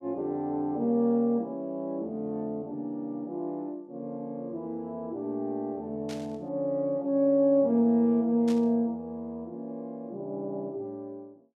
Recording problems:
burst of static; at 6 s and at 8.5 s; peak -10 dB vs average level

